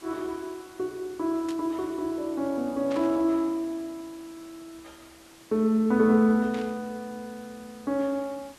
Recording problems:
hiss; slope -2 dB per octave, SNR 24 dB
static burst; at 1.5 s, at 3 s and at 6.5 s; peak -11 dB vs average level

